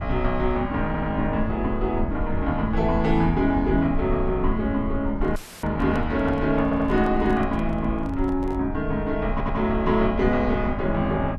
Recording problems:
rumble; below 66 Hz, SNR 9 dB
audio stuttering; at 1 s, at 6.5 s and at 9.5 s
microphone handling noise; from 5 to 8.5 s; peak -8 dB vs average level
audio cutting out; at 5.5 s; filled with static

